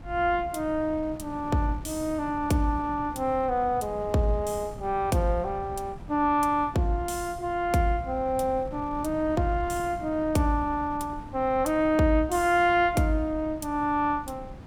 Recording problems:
wind noise; below 210 Hz, SNR 16 dB

